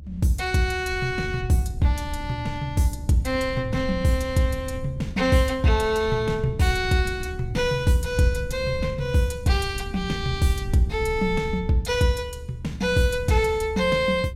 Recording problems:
rumble; below 94 Hz, SNR 11 dB

